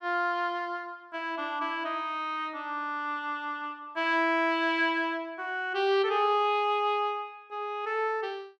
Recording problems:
none

